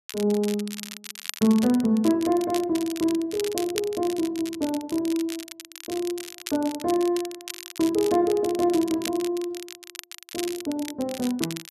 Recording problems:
crackling; vinyl, SNR 12 dB

